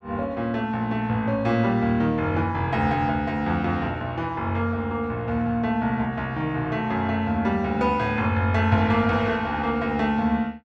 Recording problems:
none

